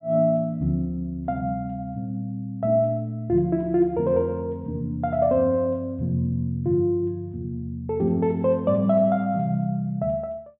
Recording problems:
treble missing; nothing above 4 kHz

